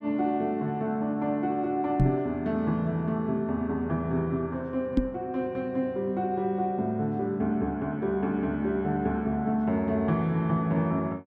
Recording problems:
knock on the microphone; at 2 s and at 5 s; peak +9 dB vs average level

